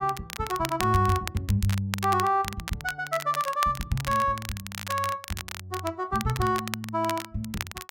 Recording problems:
crackle; vinyl, SNR 10 dB

